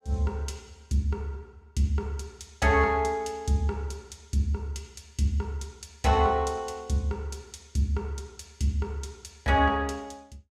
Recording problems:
none

